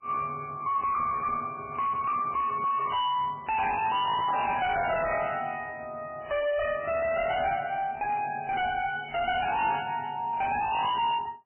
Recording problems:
lossy compression; MP3, log-spectral distance 5 dB, nothing above 3 kHz
distortion; hard clipping, signal-to-distortion ratio 5 dB

